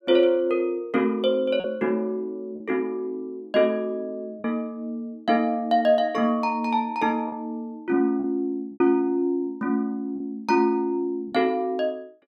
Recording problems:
packet loss; 3% of the sound replaced, filled with repeated pitch periods

